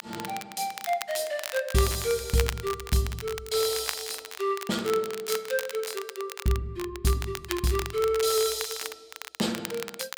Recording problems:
crackle; vinyl, SNR 9 dB

